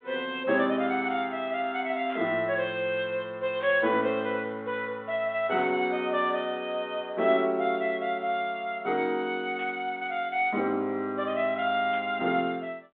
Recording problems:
phone line; 240 Hz to 3.6 kHz, G.726
static burst; 5 times, first at 2 s; peak -12 dB vs average level

